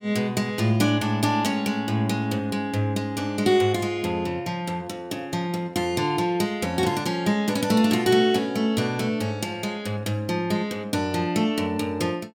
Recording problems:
none

